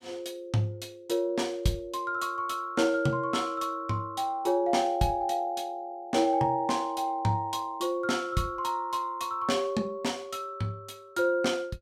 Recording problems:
none

